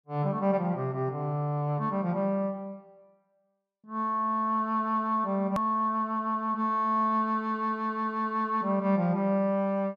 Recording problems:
click at an edit; at 5.5 s

